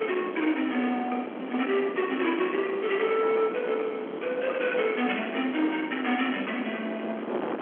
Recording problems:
telephone audio; 220 Hz to 3.4 kHz, G.711
distorted audio; soft clipping, signal-to-distortion ratio 13 dB
hiss; SNR 25 dB
wind on the microphone; below 770 Hz, SNR 9 dB

